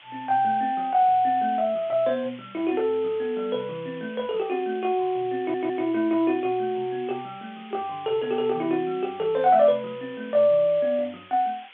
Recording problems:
telephone audio; 280 Hz to 3.5 kHz, G.711
background hiss; SNR 22 dB
audio stuttering; at 5.5 s

